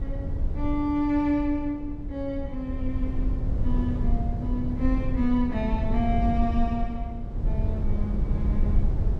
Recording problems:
rumble; below 84 Hz, SNR 1 dB

